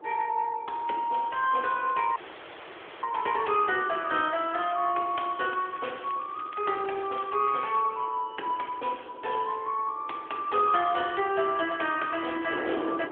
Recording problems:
telephone audio; 280 Hz to 3.5 kHz, AMR-NB
wind on the microphone; below 710 Hz, SNR 17 dB
audio cutting out; at 2 s for 1 s
crackle; from 5 to 8 s; loose cable, SNR 21 dB

